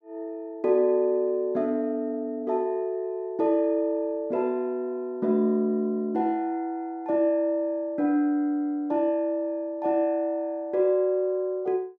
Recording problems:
none

